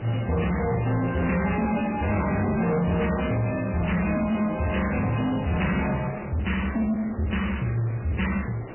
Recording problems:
codec artefacts; MP3, log-spectral distance 8 dB, nothing above 2.9 kHz
distorted audio; soft clipping, signal-to-distortion ratio 10 dB
background hiss; SNR 15 dB

